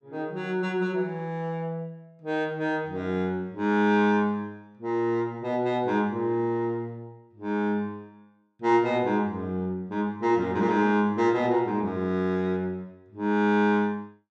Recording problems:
none

